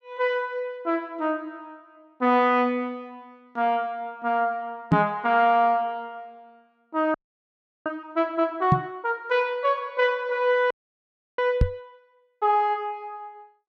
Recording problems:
microphone bump; at 5 s, at 8.5 s and at 12 s; peak +8 dB vs average level
audio freezing; at 7 s for 0.5 s and at 11 s for 0.5 s

